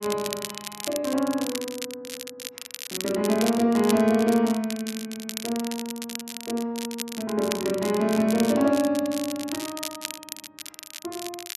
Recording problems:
crackle; vinyl, SNR 10 dB

